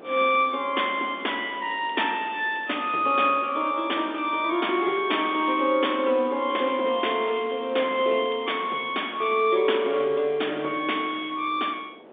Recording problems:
telephone audio; 260 Hz to 3.6 kHz, G.711
wind on the microphone; below 780 Hz, SNR 22 dB
crackling; from 1 to 3.5 s and from 6.5 to 8.5 s; loose cable, SNR 27 dB

